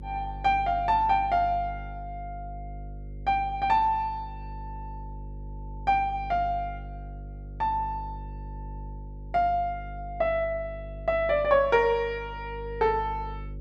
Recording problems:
electrical hum; 50 Hz, harmonics up to 550 Hz, SNR 14 dB

